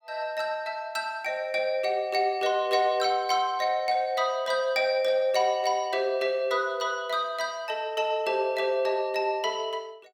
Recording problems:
none

